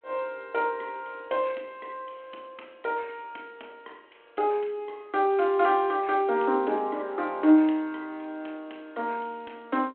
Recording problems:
telephone audio; 240 Hz to 3.4 kHz, G.726

